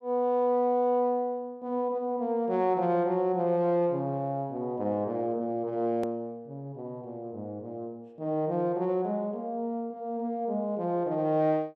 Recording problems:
edit click; at 6 s

